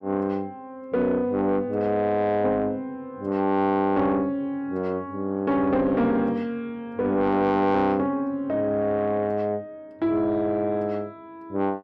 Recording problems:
distorted audio; soft clipping, signal-to-distortion ratio 11 dB

